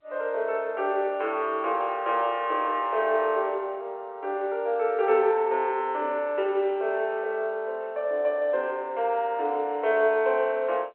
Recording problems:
telephone audio; 340 Hz to 3.2 kHz, G.711

